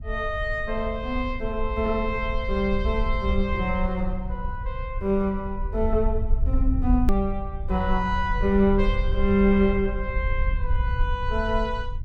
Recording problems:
low-frequency rumble; below 66 Hz, SNR 4 dB
hard cut with a click; at 7 s

